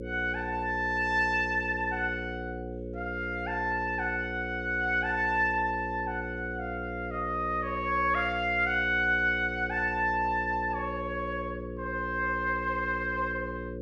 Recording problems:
mains hum; 60 Hz, harmonics up to 540 Hz, SNR 8 dB

